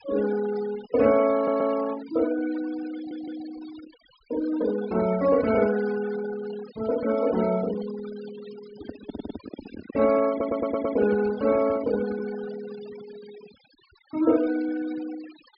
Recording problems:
treble cut off; nothing above 5.5 kHz
denoising artefacts; signal-to-artefact ratio 17 dB
audio stuttering; 4 times, first at 1.5 s
microphone handling noise; from 8.5 to 12 s; peak -6 dB vs average level

